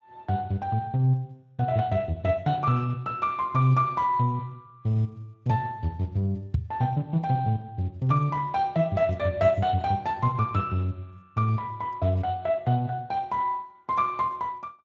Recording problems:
lossy codec; Speex, log-spectral distance 2 dB
knock on the microphone; at 6.5 s; peak +4 dB vs average level

